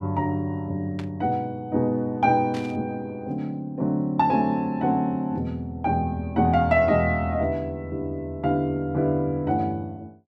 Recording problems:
static burst; at 1 s and at 2.5 s; peak -11 dB vs average level

